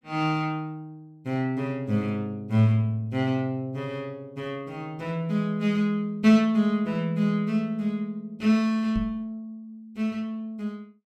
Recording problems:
knock on the microphone; at 9 s; peak -1 dB vs average level

